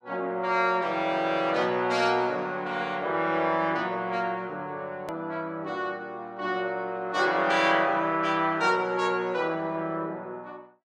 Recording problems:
hard cut with a click; at 5 s

